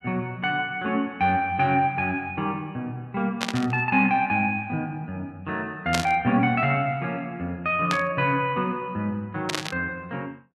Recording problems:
burst of static; 4 times, first at 3.5 s; peak +4 dB vs average level

